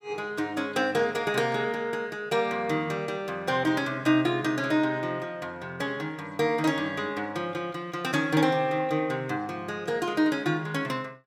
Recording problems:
none

